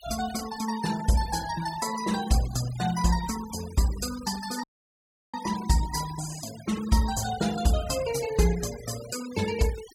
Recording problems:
denoising artefacts; signal-to-artefact ratio 14 dB
dropout; at 4.5 s for 0.5 s

